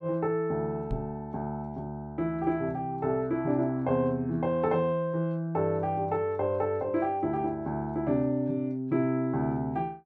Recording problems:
knock on the microphone; at 1 s; peak -1 dB vs average level

